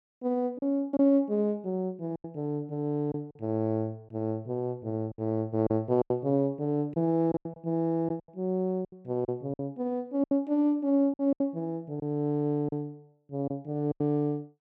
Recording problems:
packet loss; 8% of the sound replaced, filled with silence

